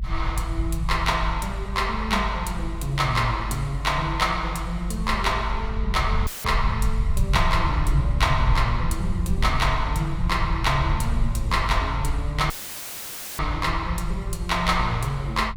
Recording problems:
rumble; below 78 Hz, SNR 3 dB
audio cutting out; at 6.5 s and at 13 s for 1 s; filled with static

